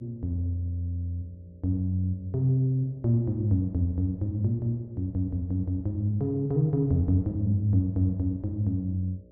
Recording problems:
hum; 60 Hz, harmonics up to 600 Hz, SNR 29 dB

